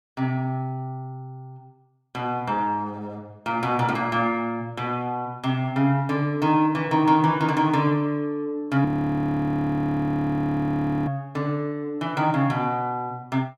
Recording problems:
frozen audio; at 9 s for 2 s

